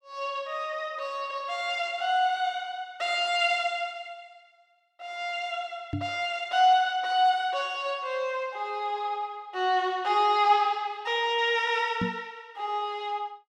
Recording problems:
microphone thump; at 6 s and at 12 s; peak +1 dB vs average level

